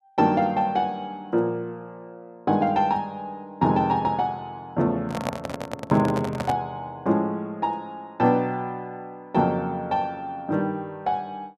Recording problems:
microphone handling noise; from 5 to 6.5 s; peak +2 dB vs average level

